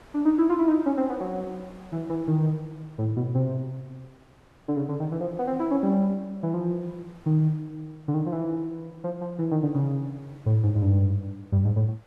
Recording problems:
wind noise; below 1.3 kHz, SNR 28 dB

